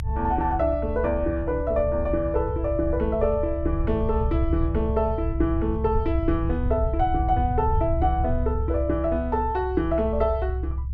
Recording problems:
rumble; below 86 Hz, strongest tone 66 Hz, SNR 3 dB

